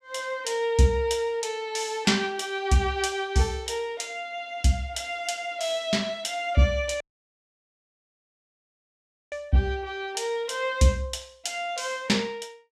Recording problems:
dropout; at 7 s for 2.5 s

